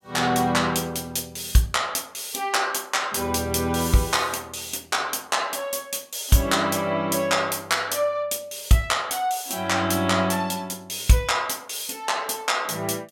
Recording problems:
none

